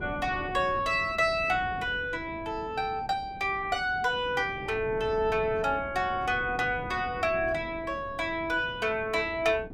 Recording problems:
wind on the microphone; below 340 Hz, SNR 15 dB

